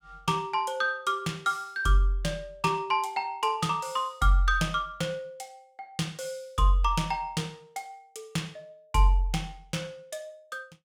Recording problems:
none

